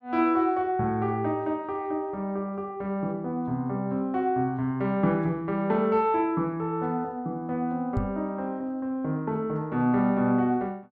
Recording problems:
knock on the microphone; at 8 s; peak +2 dB vs average level

